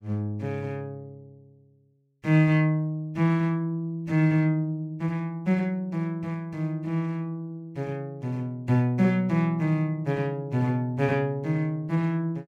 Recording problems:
none

